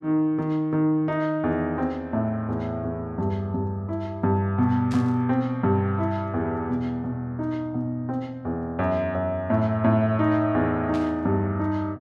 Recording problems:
static burst; at 5 s and at 11 s; peak -12 dB vs average level

